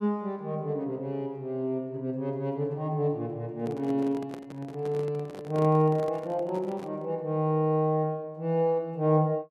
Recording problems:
handling noise; from 3.5 to 7 s; peak -8 dB vs average level

